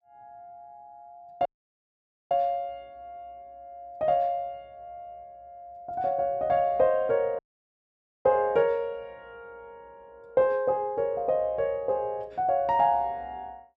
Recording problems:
dropout; at 1.5 s for 1 s and at 7.5 s for 1 s

